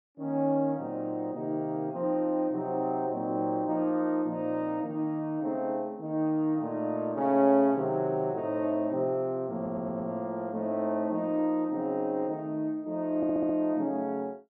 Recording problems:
stutter; at 9.5 s and at 13 s

